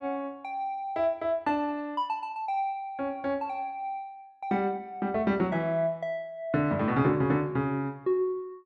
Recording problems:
none

